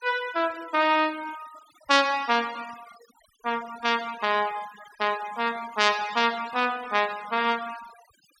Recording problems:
denoising artefacts; signal-to-artefact ratio 19 dB

